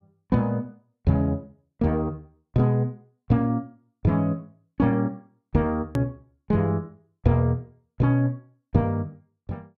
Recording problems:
edit click; at 6 s

